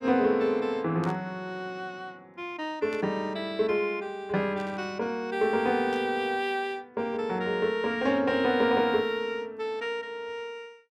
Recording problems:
burst of static; 4 times, first at 1 s; peak -12 dB vs average level

